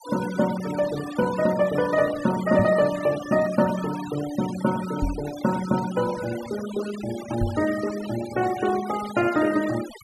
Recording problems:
denoising artefacts; signal-to-artefact ratio 13 dB
microphone bump; at 2.5 s, at 5 s and at 7.5 s; peak +2 dB vs average level

